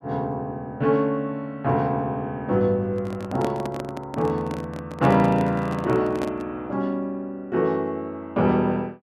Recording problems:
microphone handling noise; from 3 to 6.5 s; peak -2 dB vs average level

